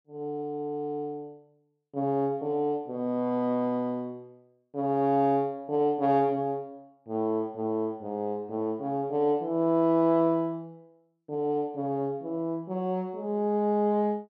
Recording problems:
none

